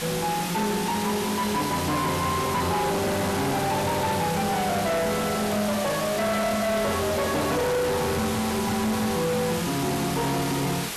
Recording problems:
distorted audio; soft clipping, signal-to-distortion ratio 5 dB
background hiss; slope -3 dB per octave, SNR 2 dB
handling noise; from 6 to 8 s; peak -4 dB vs average level

